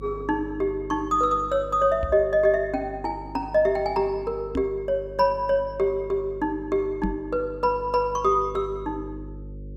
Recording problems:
electrical hum; 50 Hz, harmonics up to 550 Hz, SNR 17 dB
knock on the microphone; at 2 s, at 4.5 s and at 7 s; peak 0 dB vs average level

